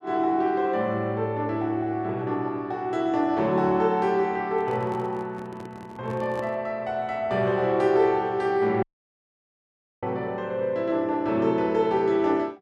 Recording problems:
handling noise; from 4.5 to 6.5 s; peak -8 dB vs average level
dropout; at 9 s for 1 s

